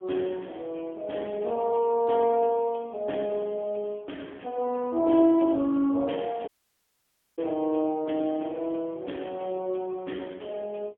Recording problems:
phone line; 220 Hz to 3.4 kHz, AMR-NB, then MP3
audio cutting out; at 6.5 s for 1 s

